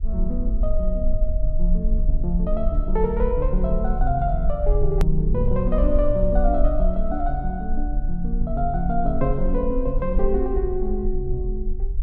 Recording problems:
rumble; below 44 Hz, SNR 1 dB
edit click; at 5 s

